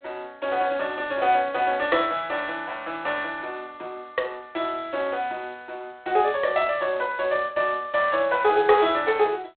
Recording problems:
phone line; 340 Hz to 4 kHz, G.726

